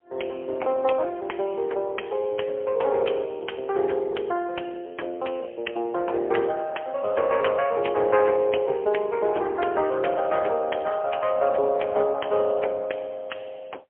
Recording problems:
phone line; 320 Hz to 3.2 kHz, AMR-NB, then MP3

